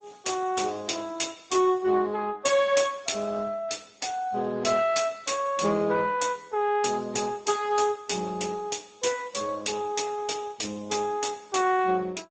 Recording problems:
lossy compression; Speex, then Opus, log-spectral distance 7 dB

